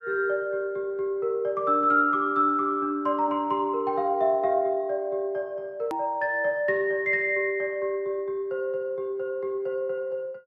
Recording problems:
edit click; at 6 s

